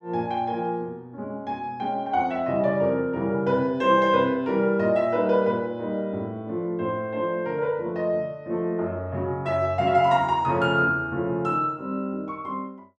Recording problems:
none

